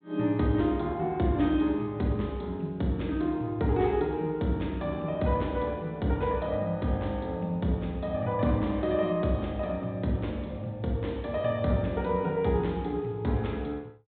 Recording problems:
low-pass filter; nothing above 4 kHz

